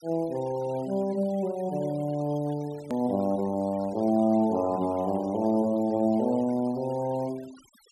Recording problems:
noise reduction artefacts; signal-to-artefact ratio 24 dB
click at an edit; at 3 s

